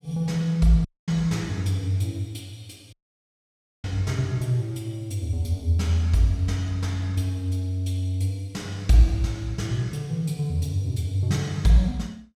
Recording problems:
audio cutting out; at 1 s and at 3 s for 1 s

